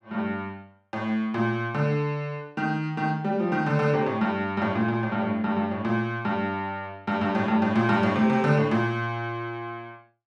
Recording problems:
none

